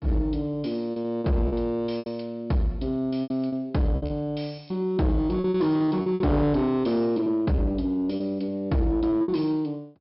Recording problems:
treble cut off; nothing above 5.3 kHz
distortion; soft clipping, signal-to-distortion ratio 10 dB
lost packets; 10% of the sound replaced, filled with repeated pitch periods

